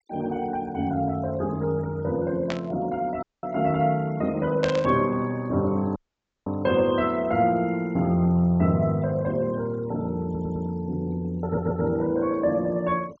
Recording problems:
treble missing; nothing above 8 kHz
denoising artefacts; signal-to-artefact ratio 25 dB
static burst; at 2.5 s and at 4.5 s; peak -2 dB vs average level
dropout; at 3 s and at 6 s for 0.5 s
stutter; at 10 s and at 11 s

